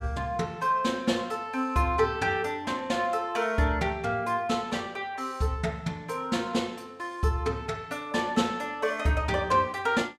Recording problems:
none

